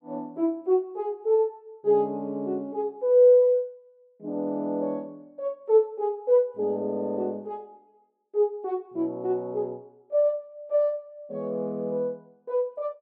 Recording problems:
none

